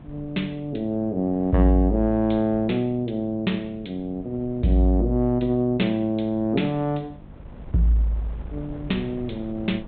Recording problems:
treble cut off; nothing above 4 kHz
hum; 50 Hz, harmonics up to 700 Hz, SNR 24 dB
wind on the microphone; below 200 Hz, SNR 20 dB

